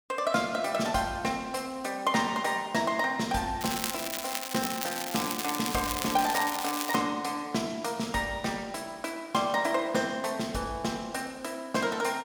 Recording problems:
crackle; from 3.5 to 7 s; loose cable, SNR 4 dB

